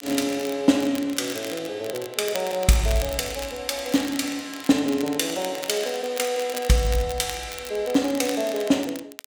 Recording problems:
crackling; vinyl, SNR 13 dB

